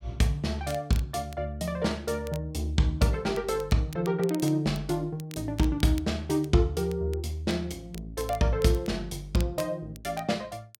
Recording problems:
crackling; vinyl, SNR 20 dB

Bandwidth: 16.5 kHz